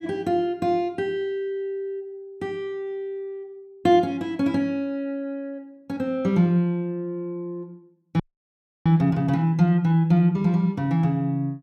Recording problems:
frozen audio; at 8 s for 0.5 s

